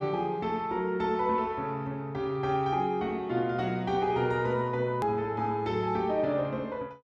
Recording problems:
click at an edit; at 5 s

